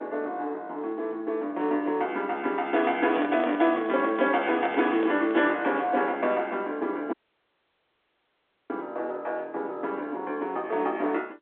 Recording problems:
telephone audio; 260 Hz to 3.7 kHz, G.711
microphone handling noise; from 3 to 5.5 s; peak -2 dB vs average level
dropout; at 7 s for 1.5 s

